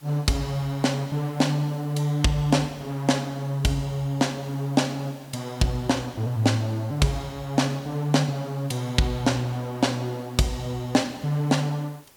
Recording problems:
hiss; slope -2 dB per octave, SNR 26 dB

